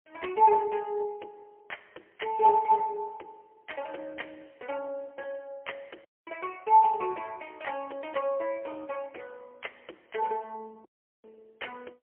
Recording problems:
telephone audio; 320 Hz to 3.1 kHz, AMR-NB, then MP3
audio cutting out; at 6 s and at 11 s

